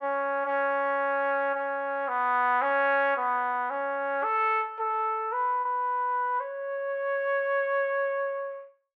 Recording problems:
packet loss; 0.7% of the sound replaced, filled with repeated pitch periods

